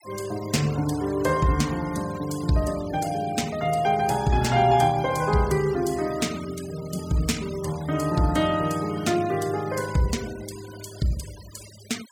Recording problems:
noise reduction artefacts; signal-to-artefact ratio 17 dB

